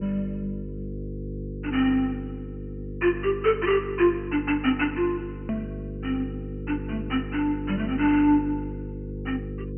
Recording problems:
treble cut off; nothing above 3.1 kHz
electrical hum; 50 Hz, harmonics up to 500 Hz, SNR 9 dB
edit click; at 5.5 s

